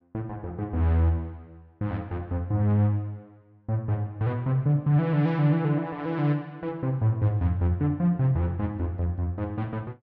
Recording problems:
none

